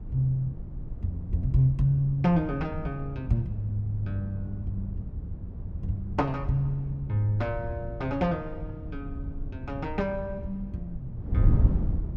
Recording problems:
wind noise; below 120 Hz, SNR 5 dB

